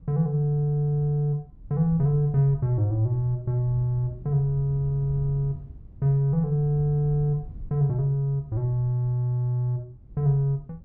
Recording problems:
low-frequency rumble; below 96 Hz, SNR 18 dB

